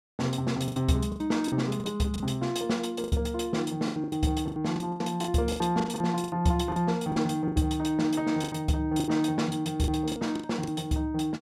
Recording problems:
packet loss; 14% of the sound replaced, filled with the last packet

